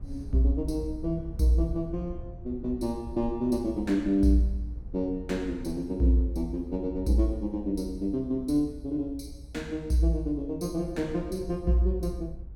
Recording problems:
rumble; below 70 Hz, SNR 13 dB

